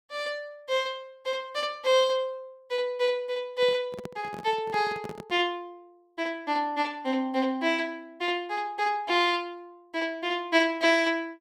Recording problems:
microphone handling noise; from 3.5 to 5.5 s; peak -7 dB vs average level

